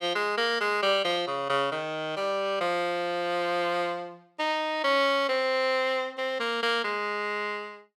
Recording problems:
none

